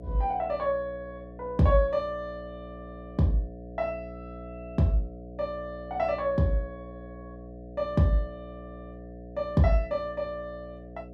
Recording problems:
hum; 60 Hz, harmonics up to 720 Hz, SNR 15 dB

